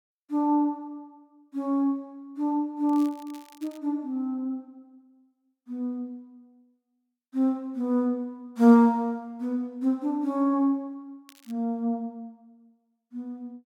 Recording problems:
crackling; at 3 s and at 11 s; loose cable, SNR 27 dB

